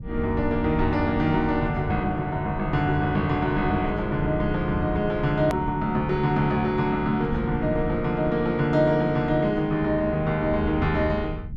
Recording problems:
rumble; below 140 Hz, SNR 12 dB
hard cut with a click; at 5.5 s

